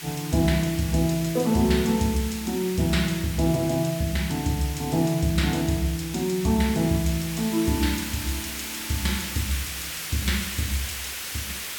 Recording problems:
hiss; SNR 8 dB

